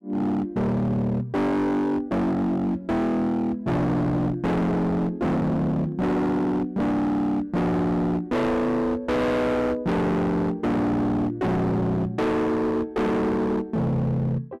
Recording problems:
distortion; hard clipping, signal-to-distortion ratio 6 dB

